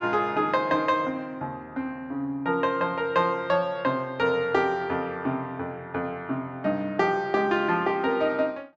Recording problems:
none

